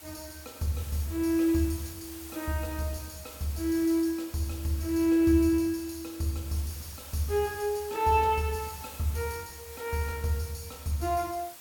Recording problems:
hiss; slope -1 dB per octave, SNR 15 dB

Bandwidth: 17.5 kHz